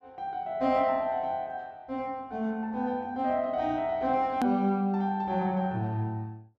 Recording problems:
hard cut with a click; at 4.5 s

